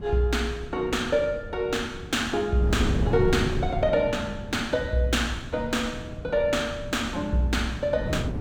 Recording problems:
wind on the microphone; below 210 Hz, SNR 7 dB

